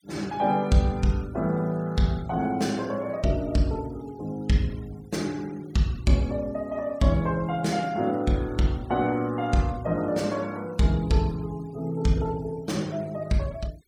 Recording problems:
denoising artefacts; signal-to-artefact ratio 25 dB

